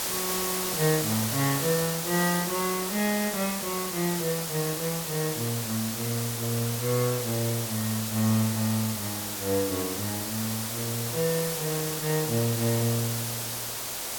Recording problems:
hiss; slope -1 dB per octave, SNR 1 dB

